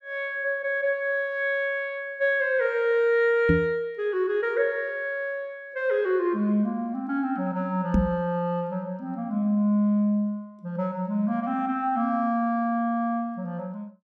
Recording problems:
microphone thump; at 3.5 s and at 8 s; peak +7 dB vs average level

